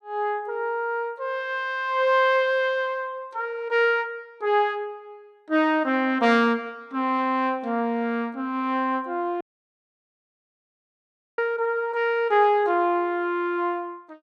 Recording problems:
dropout; at 9.5 s for 2 s

